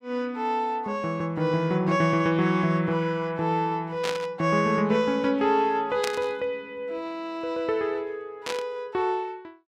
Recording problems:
burst of static; at 4 s, at 6 s and at 8.5 s; peak 0 dB vs average level

